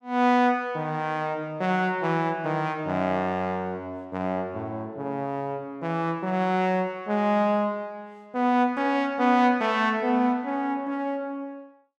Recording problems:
none

